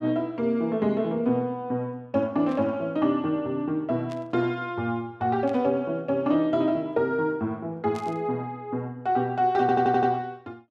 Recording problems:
static burst; 4 times, first at 2.5 s; peak -15 dB vs average level
stutter; at 9.5 s

